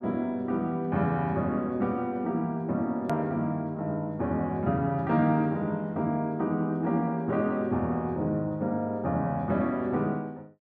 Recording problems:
click at an edit; at 3 s

